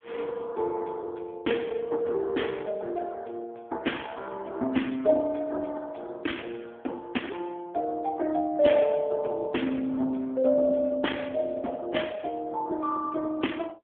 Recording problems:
telephone audio; 220 Hz to 3.4 kHz, AMR-NB

